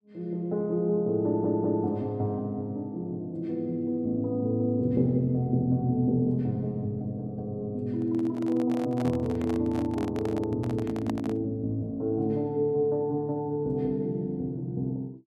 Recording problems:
stutter; at 1.5 s
microphone handling noise; from 8 to 11 s; peak -5 dB vs average level

